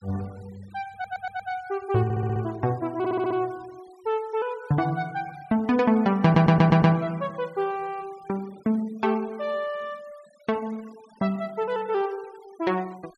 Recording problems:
denoising artefacts; signal-to-artefact ratio 26 dB
audio stuttering; 4 times, first at 1 s

